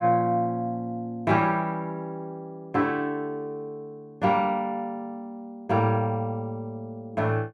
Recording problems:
none

